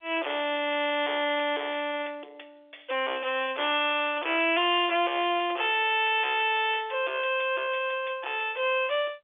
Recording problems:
telephone audio; 300 Hz to 3.5 kHz, G.711
distortion; soft clipping, signal-to-distortion ratio 10 dB

